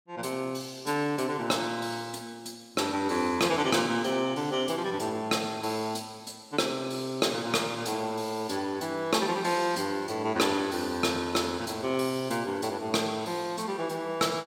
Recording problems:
none

